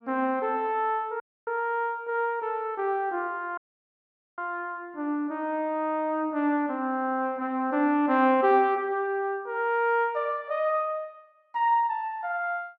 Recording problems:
audio cutting out; at 1 s and at 3.5 s for 1 s

